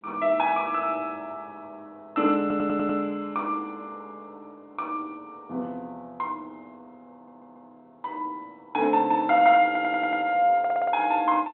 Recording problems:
phone line; 220 Hz to 3.6 kHz, G.726
audio stuttering; 4 times, first at 2.5 s

